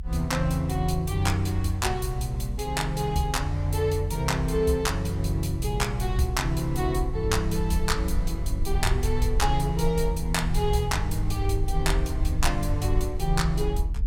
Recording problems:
rumble; below 60 Hz, SNR 5 dB

